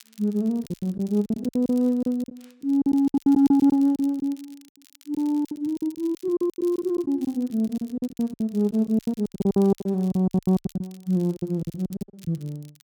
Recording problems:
crackling; vinyl, SNR 27 dB
lost packets; 21% of the sound replaced, filled with silence

